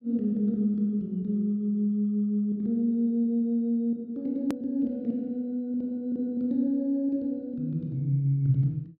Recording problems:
hard cut with a click; at 4.5 s

